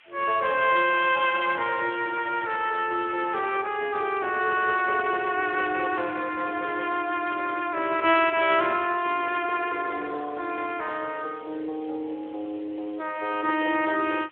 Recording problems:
phone line; 280 Hz to 3.3 kHz, Speex
background hiss; SNR 27 dB

